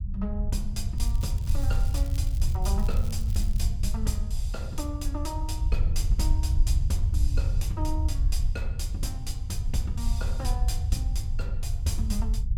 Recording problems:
low-frequency rumble; below 76 Hz, SNR -7 dB
crackle; from 1 to 3.5 s; loose cable, SNR 14 dB

